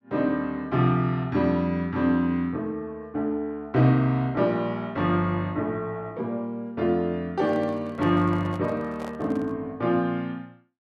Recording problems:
handling noise; from 7.5 to 9.5 s; peak -10 dB vs average level

